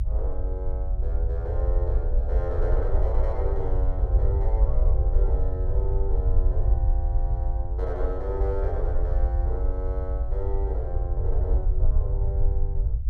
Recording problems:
low-frequency rumble; below 60 Hz, SNR -9 dB

